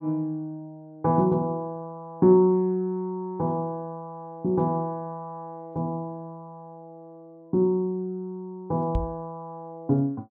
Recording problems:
microphone thump; at 9 s; peak +2 dB vs average level

